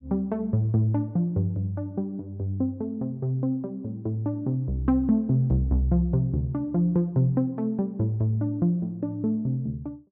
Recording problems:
none

